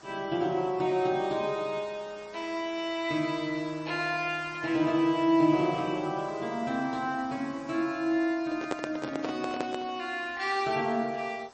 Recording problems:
lossy codec; MP3, log-spectral distance 4 dB, nothing above 8.2 kHz
hiss; SNR 22 dB
handling noise; from 8.5 to 10 s; peak +1 dB vs average level

